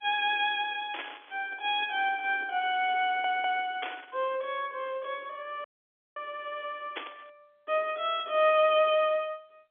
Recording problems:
phone line; 260 Hz to 3.5 kHz, G.711
static burst; at 1 s, at 4 s and at 7 s; peak -3 dB vs average level
audio stuttering; at 3 s
dropout; at 5.5 s for 0.5 s

